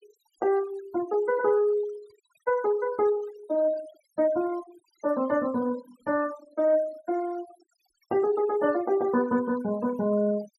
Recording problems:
noise reduction artefacts; signal-to-artefact ratio 19 dB

